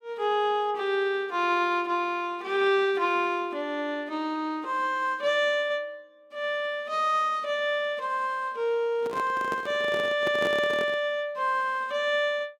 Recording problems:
microphone handling noise; from 9 to 11 s; peak -2 dB vs average level

